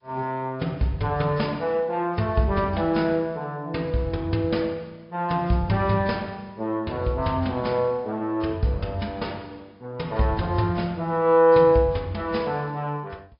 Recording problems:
low-pass filter; nothing above 5.2 kHz
lossy codec; G.722, then AAC, log-spectral distance 2 dB

